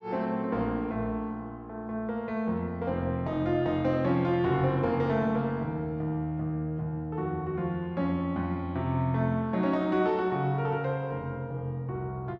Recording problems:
none

